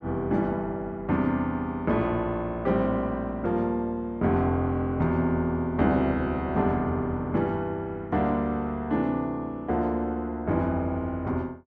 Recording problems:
none

